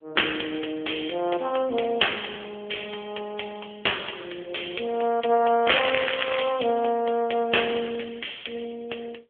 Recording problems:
telephone audio; 320 Hz to 3.4 kHz, AMR-NB
crackle; at 5.5 s; loose cable, SNR 2 dB

